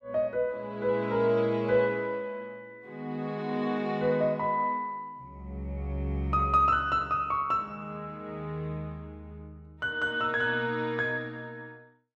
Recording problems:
none

